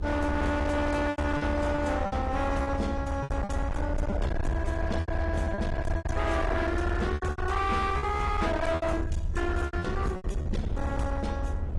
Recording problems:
lossy compression; AAC, log-spectral distance 2 dB, nothing above 11.3 kHz
distorted audio; hard clipping, signal-to-distortion ratio 8 dB
low-frequency rumble; below 94 Hz, SNR 2 dB
wind on the microphone; below 230 Hz, SNR 12 dB
packet loss; 12% of the sound replaced, filled with repeated pitch periods

